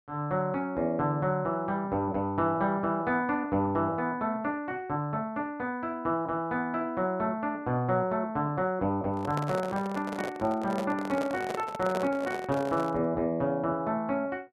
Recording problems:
microphone handling noise; from 9 to 13 s; peak -1 dB vs average level

